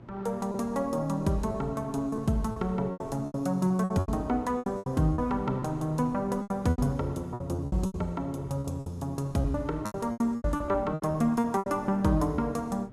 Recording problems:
hum; 60 Hz, harmonics up to 960 Hz, SNR 22 dB
wind on the microphone; below 420 Hz, SNR 21 dB
packet loss; 14% of the sound replaced, filled with repeated pitch periods

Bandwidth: 15 kHz